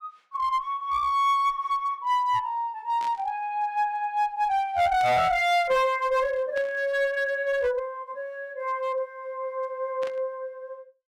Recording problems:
distortion; hard clipping, uneven, signal-to-distortion ratio 9 dB
burst of static; 4 times, first at 3 s; peak -12 dB vs average level

